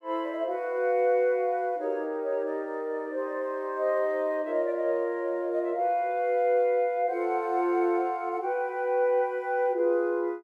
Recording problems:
none

